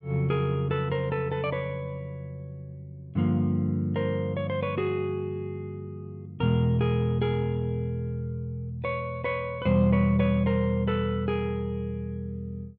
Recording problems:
none

